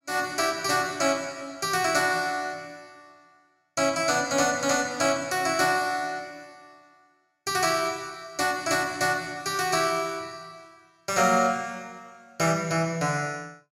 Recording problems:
none

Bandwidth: 16 kHz